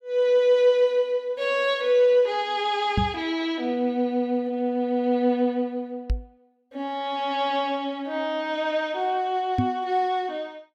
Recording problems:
microphone bump; at 3 s, at 6 s and at 9.5 s; peak +3 dB vs average level

